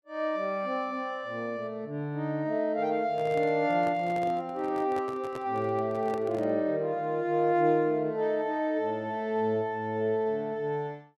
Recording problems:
microphone handling noise; from 3 to 6.5 s; peak -7 dB vs average level

